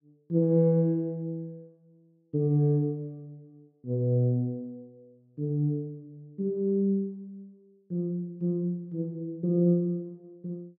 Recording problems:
none

